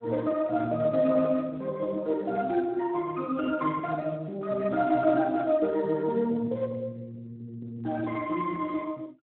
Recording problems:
telephone audio; 240 Hz to 2.1 kHz, Speex

